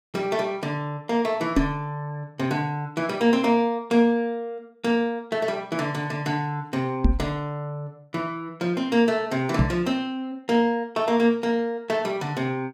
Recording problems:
microphone thump; at 1.5 s, at 7 s and at 9.5 s; peak +8 dB vs average level

